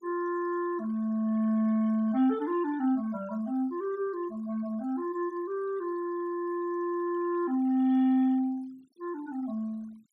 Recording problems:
denoising artefacts; signal-to-artefact ratio 26 dB

